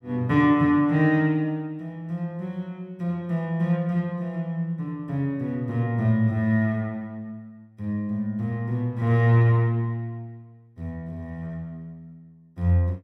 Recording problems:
none

